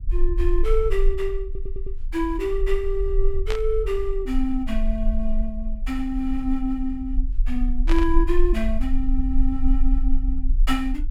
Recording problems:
low-frequency rumble; below 38 Hz, strongest tone 20 Hz, SNR 1 dB
audio stuttering; at 1.5 s
static burst; at 3.5 s and at 8 s; peak 0 dB vs average level

